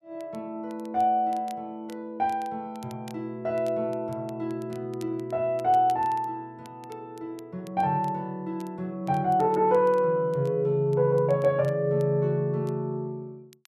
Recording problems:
crackle; vinyl, SNR 29 dB

